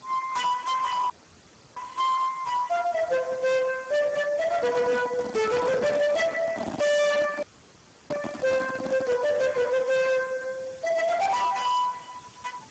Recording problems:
codec artefacts; Speex, log-spectral distance 7 dB, nothing above 7.6 kHz
distorted audio; hard clipping, signal-to-distortion ratio 6 dB
hiss; SNR 24 dB
audio cutting out; at 1 s for 0.5 s and at 7.5 s for 0.5 s
microphone handling noise; from 4.5 to 9.5 s; peak -2 dB vs average level

